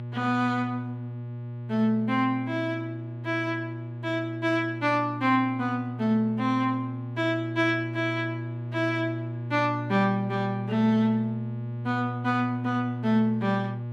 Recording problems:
hum; 60 Hz, harmonics up to 840 Hz, SNR 8 dB

